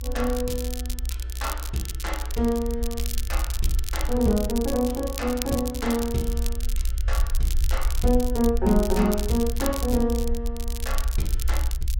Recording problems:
rumble; below 60 Hz, SNR 3 dB
crackling; vinyl, SNR 9 dB

